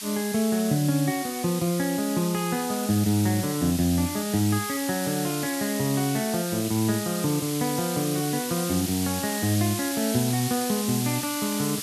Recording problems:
background hiss; slope +5 dB per octave, SNR 6 dB

